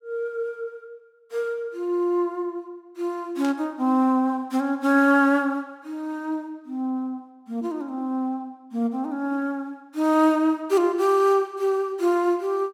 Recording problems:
burst of static; at 3.5 s; peak -10 dB vs average level

